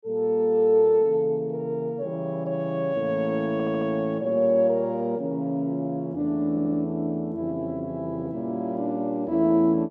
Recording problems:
audio stuttering; at 3.5 s and at 6.5 s

